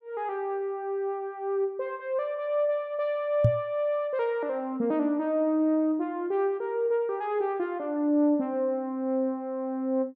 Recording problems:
microphone bump; at 3.5 s; peak +9 dB vs average level

